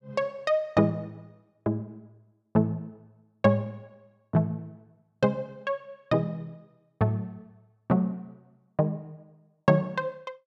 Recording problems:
none

